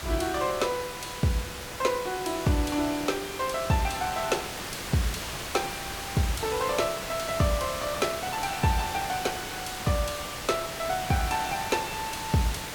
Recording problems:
hiss; slope -2 dB per octave, SNR 6 dB

